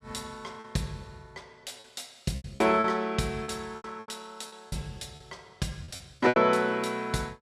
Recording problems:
lost packets; 11% of the sound replaced, filled with repeated pitch periods

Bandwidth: 14.5 kHz